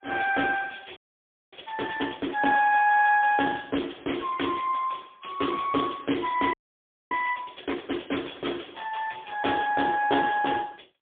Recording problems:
telephone audio; 220 Hz to 2.9 kHz, AMR-NB, then MP3
audio freezing; at 1 s for 0.5 s and at 6.5 s for 0.5 s

